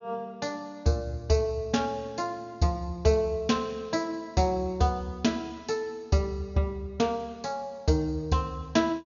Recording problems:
treble cut off; nothing above 6.9 kHz

